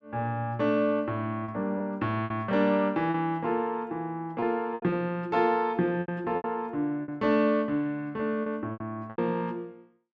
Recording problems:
packet loss; 7% of the sound replaced, filled with repeated pitch periods

